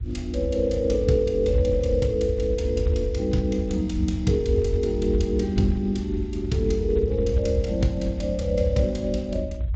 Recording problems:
codec artefacts; Speex, log-spectral distance 2 dB, nothing above 7.6 kHz
rumble; below 90 Hz, SNR 4 dB

